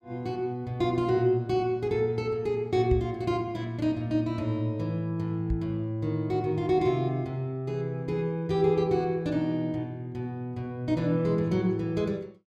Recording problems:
microphone bump; at 3 s and at 5.5 s; peak +3 dB vs average level

